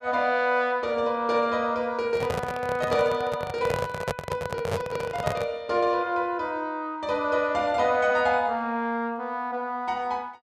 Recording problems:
handling noise; from 2 to 5.5 s; peak +2 dB vs average level

